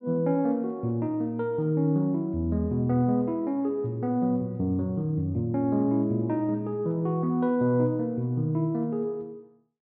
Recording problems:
none

